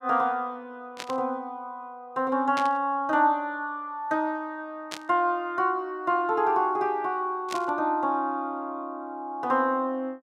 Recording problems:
static burst; 4 times, first at 1 s; peak -3 dB vs average level

